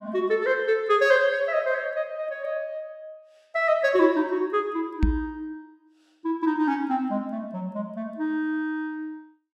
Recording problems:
microphone bump; at 5 s; peak +6 dB vs average level

